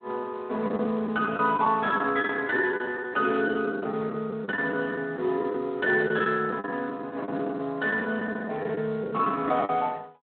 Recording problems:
phone line; 220 Hz to 3.5 kHz, Speex
packet loss; 12% of the sound replaced, filled with the last packet

